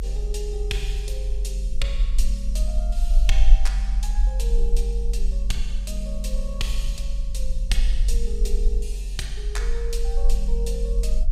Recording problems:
low-frequency rumble; below 46 Hz, SNR -8 dB

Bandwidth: 15.5 kHz